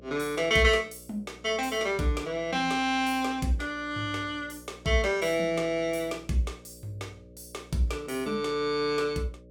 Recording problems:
electrical hum; 60 Hz, harmonics up to 600 Hz, SNR 23 dB

